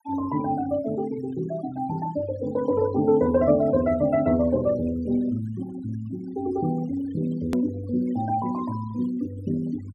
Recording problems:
denoising artefacts; signal-to-artefact ratio 20 dB
click at an edit; at 7.5 s

